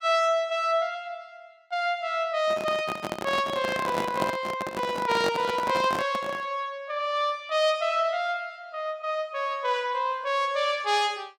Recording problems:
microphone handling noise; from 2.5 to 6.5 s; peak +3 dB vs average level

